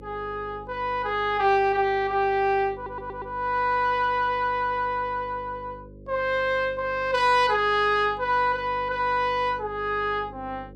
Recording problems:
electrical hum; 50 Hz, harmonics up to 550 Hz, SNR 21 dB
audio stuttering; at 2.5 s

